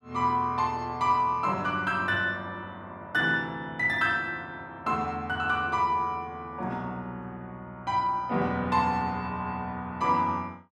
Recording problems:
none

